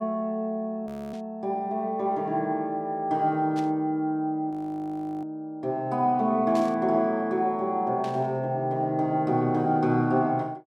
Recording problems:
audio freezing; at 1 s and at 4.5 s for 0.5 s
burst of static; 4 times, first at 1 s; peak -11 dB vs average level

